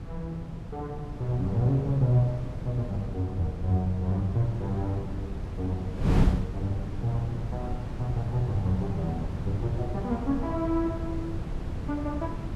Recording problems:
wind on the microphone; below 170 Hz, SNR 4 dB

